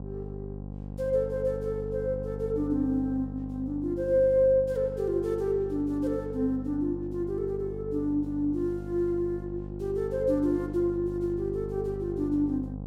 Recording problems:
electrical hum; 50 Hz, harmonics up to 800 Hz, SNR 10 dB

